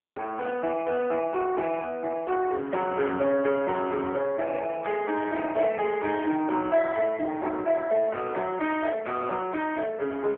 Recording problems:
phone line; 280 Hz to 3.4 kHz, AMR-NB

